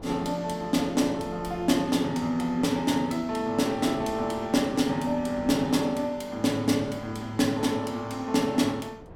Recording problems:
wind on the microphone; below 470 Hz, SNR 21 dB

